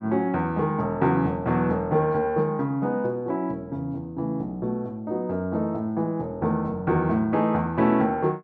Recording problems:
none

